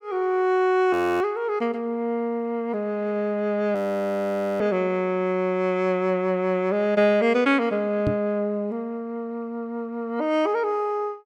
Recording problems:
audio freezing; at 1 s and at 4 s for 1 s
knock on the microphone; at 8 s; peak +2 dB vs average level

